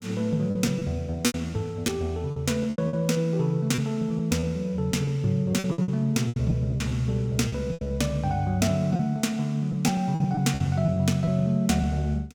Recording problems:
lost packets; 11% of the sound replaced, filled with repeated pitch periods

